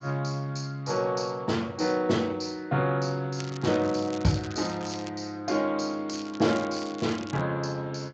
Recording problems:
lossy compression; Speex, log-spectral distance 6 dB, nothing above 6.5 kHz
crackling; from 3.5 to 5 s and from 6 to 7.5 s; loose cable, SNR 16 dB

